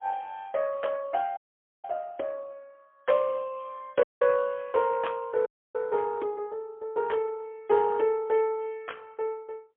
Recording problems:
telephone audio; 260 Hz to 3.4 kHz, AMR-NB, then MP3
dropout; at 1.5 s, at 4 s and at 5.5 s

